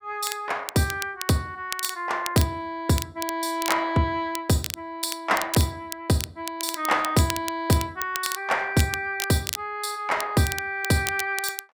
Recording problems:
crackling; vinyl, SNR 8 dB

